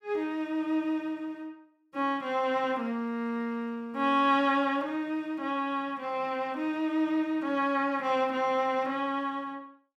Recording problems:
none

